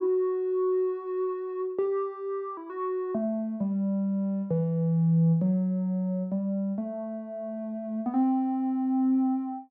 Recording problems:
none

